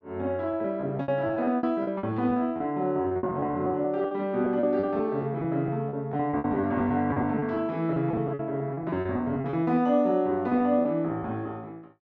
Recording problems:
packet loss; 15% of the sound replaced, filled with repeated pitch periods

